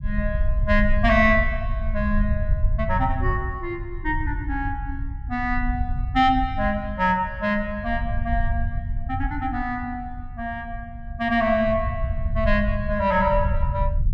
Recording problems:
low-frequency rumble; below 80 Hz, SNR 4 dB

